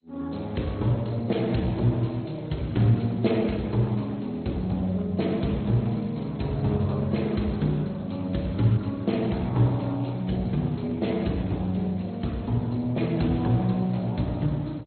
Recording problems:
lossy codec; Speex, then MP2, log-spectral distance 4 dB, nothing above 4.2 kHz

